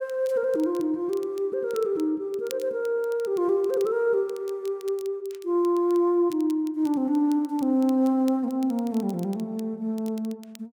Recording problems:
crackle; vinyl, SNR 25 dB

